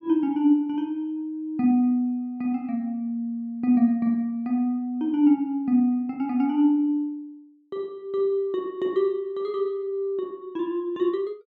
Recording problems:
none

